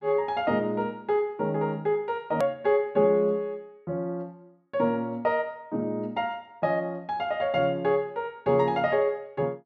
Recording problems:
edit click; at 2.5 s

